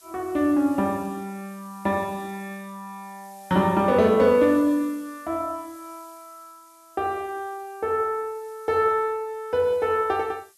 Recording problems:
hiss; slope +2 dB per octave, SNR 27 dB

